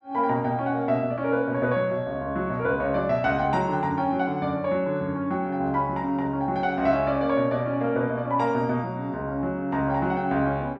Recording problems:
none

